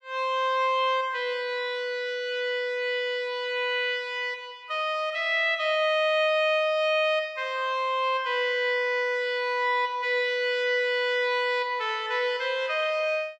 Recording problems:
none

